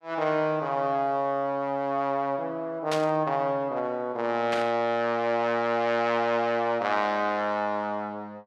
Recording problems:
static burst; at 3 s and at 4.5 s; peak -1 dB vs average level

